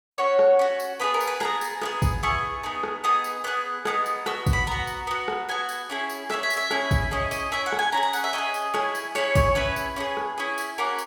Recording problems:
none

